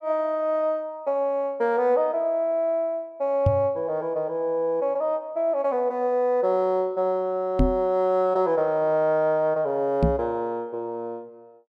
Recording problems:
microphone thump; at 3.5 s, at 7.5 s and at 10 s; peak +5 dB vs average level

